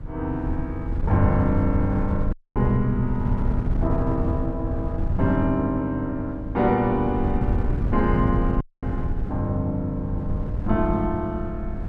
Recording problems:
wind on the microphone; below 120 Hz, SNR 3 dB
audio cutting out; at 2.5 s and at 8.5 s

